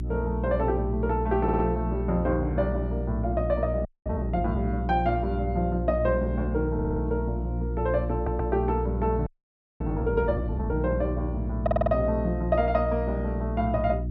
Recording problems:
hum; 60 Hz, harmonics up to 360 Hz, SNR 3 dB
stutter; 4 times, first at 1.5 s
audio freezing; at 4 s and at 9.5 s for 0.5 s

